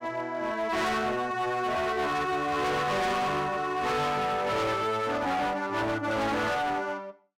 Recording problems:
distorted audio; hard clipping, signal-to-distortion ratio 7 dB

